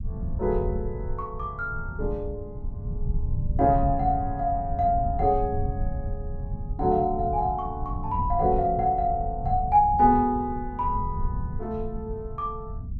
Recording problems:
rumble; below 110 Hz, SNR 7 dB

